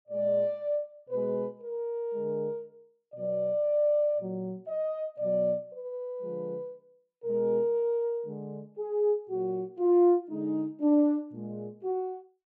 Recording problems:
none

